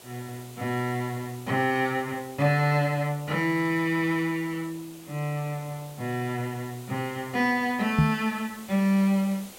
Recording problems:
hiss; SNR 19 dB
microphone bump; at 8 s; peak +8 dB vs average level

